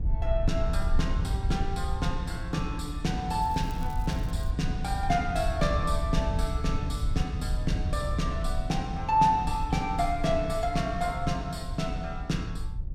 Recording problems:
wind on the microphone; below 74 Hz, SNR 3 dB
crackle; from 3.5 to 4.5 s; loose cable, SNR 23 dB

